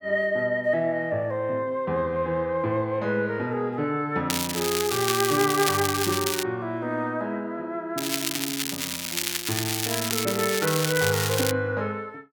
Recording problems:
crackling; from 4.5 to 6.5 s and from 8 to 12 s; loose cable, SNR 1 dB

